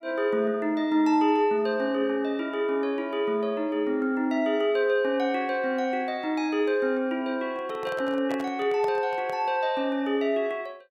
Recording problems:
microphone handling noise; from 7.5 to 9.5 s; peak -7 dB vs average level

